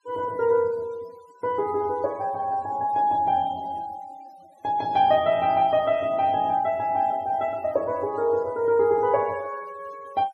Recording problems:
denoising artefacts; signal-to-artefact ratio 26 dB

